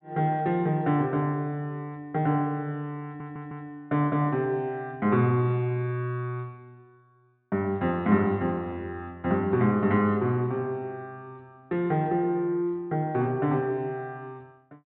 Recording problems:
treble missing; nothing above 4.1 kHz
stutter; at 3 s

